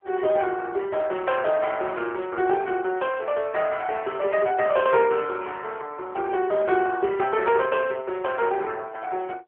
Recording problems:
telephone audio; 320 Hz to 3.4 kHz, AMR-NB

